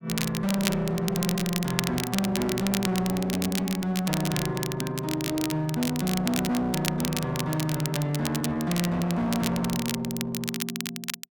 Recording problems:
distortion; hard clipping, uneven, signal-to-distortion ratio 7 dB
crackling; vinyl, SNR 6 dB

